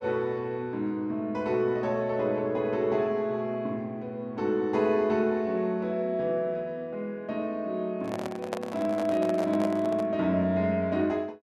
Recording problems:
handling noise; from 8 to 10 s; peak 0 dB vs average level

